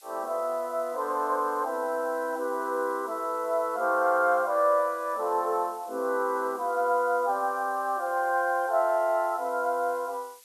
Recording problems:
hiss; SNR 24 dB

